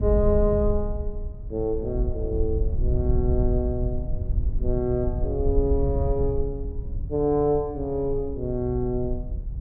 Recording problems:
wind on the microphone; below 76 Hz, SNR 3 dB

